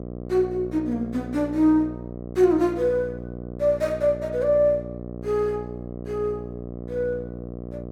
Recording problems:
hum; 60 Hz, harmonics up to 1.1 kHz, SNR 11 dB

